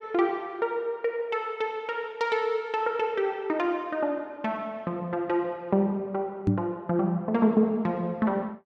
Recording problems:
knock on the microphone; at 6.5 s; peak +8 dB vs average level

